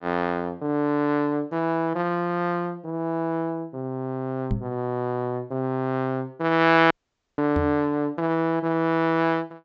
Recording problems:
treble missing; nothing above 8 kHz
knock on the microphone; at 4.5 s and at 7.5 s; peak +2 dB vs average level
audio cutting out; at 7 s

